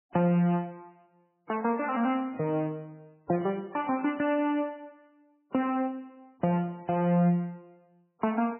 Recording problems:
lossy compression; MP3, log-spectral distance 2 dB, nothing above 2.4 kHz

